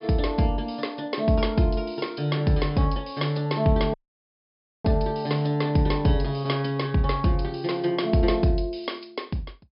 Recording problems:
treble cut off; nothing above 5.5 kHz
dropout; at 4 s for 1 s

